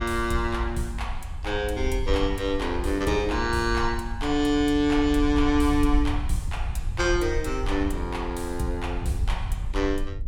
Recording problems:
wind noise; below 68 Hz, SNR 6 dB

